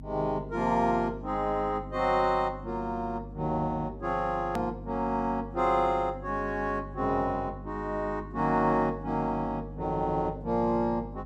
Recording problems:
hum; 50 Hz, harmonics up to 300 Hz, SNR 14 dB
edit click; at 4.5 s

